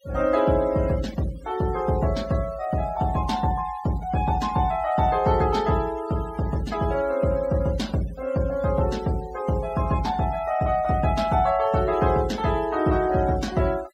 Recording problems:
noise reduction artefacts; signal-to-artefact ratio 21 dB

